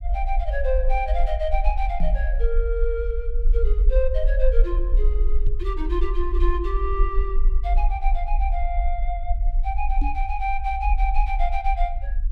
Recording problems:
rumble; below 44 Hz, SNR -3 dB
knock on the microphone; at 2 s, at 5.5 s and at 10 s; peak +1 dB vs average level

